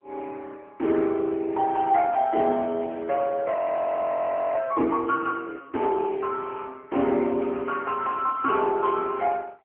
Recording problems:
phone line; 220 Hz to 3.2 kHz, AMR-NB
frozen audio; at 3.5 s for 1 s

